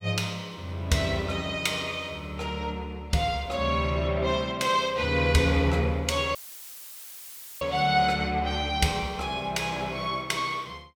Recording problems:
audio cutting out; at 6.5 s for 1.5 s; filled with static

